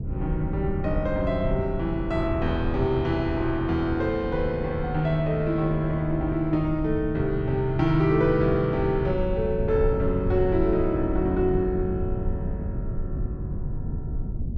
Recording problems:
rumble; below 120 Hz, SNR 7 dB

